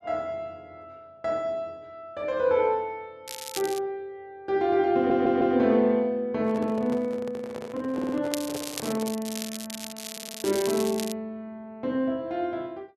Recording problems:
crackle; at 3.5 s and from 8.5 to 11 s; loose cable, SNR 9 dB
audio stuttering; at 5 s, at 8 s and at 10 s
microphone handling noise; from 6.5 to 9 s; peak -6 dB vs average level

